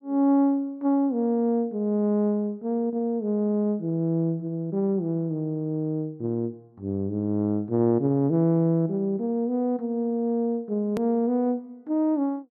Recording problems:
edit click; at 11 s

